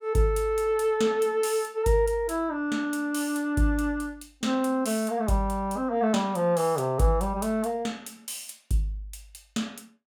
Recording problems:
none

